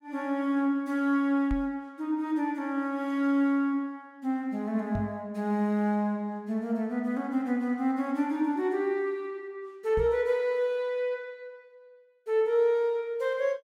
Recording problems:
microphone bump; at 1.5 s, at 5 s and at 10 s; peak -1 dB vs average level

